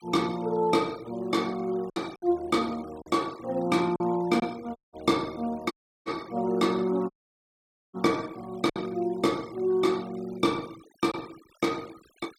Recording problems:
noise reduction artefacts; signal-to-artefact ratio 22 dB
lost packets; 3% of the sound replaced, filled with silence
dropout; at 5 s, at 5.5 s and at 7 s for 1 s

